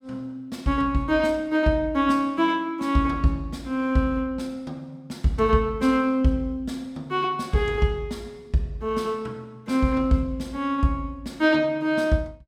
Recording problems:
none

